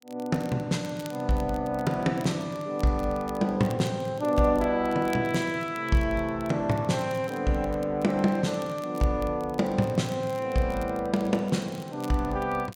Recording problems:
crackle; vinyl, SNR 24 dB

